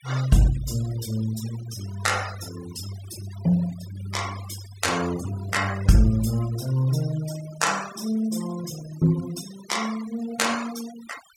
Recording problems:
denoising artefacts; signal-to-artefact ratio 15 dB

